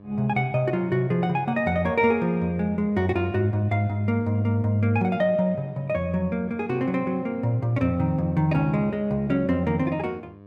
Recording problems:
mains hum; 50 Hz, harmonics up to 1.2 kHz, SNR 23 dB

